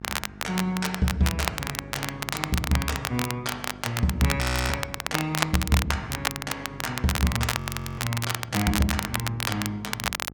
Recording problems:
electrical hum; 50 Hz, harmonics up to 1.3 kHz, SNR 15 dB
crackle; vinyl, SNR 2 dB
frozen audio; at 4.5 s and at 7.5 s

